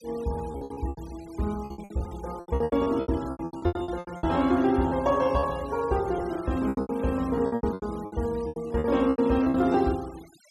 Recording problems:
noise reduction artefacts; signal-to-artefact ratio 22 dB
lost packets; 20% of the sound replaced, filled with repeated pitch periods

